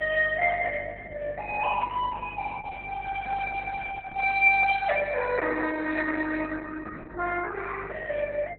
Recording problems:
codec artefacts; Opus, log-spectral distance 4 dB, nothing above 4 kHz
electrical hum; 50 Hz, harmonics up to 500 Hz, SNR 23 dB
handling noise; from 3 to 5 s; peak -9 dB vs average level

